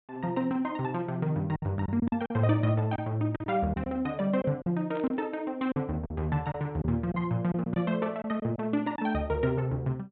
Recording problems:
low-pass filter; nothing above 4 kHz
lost packets; 7% of the sound replaced, filled with silence
static burst; at 5 s; peak -14 dB vs average level

